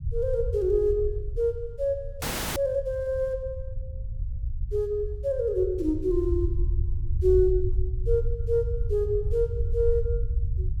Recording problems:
low-frequency rumble; below 80 Hz, SNR 4 dB
frozen audio; at 2 s

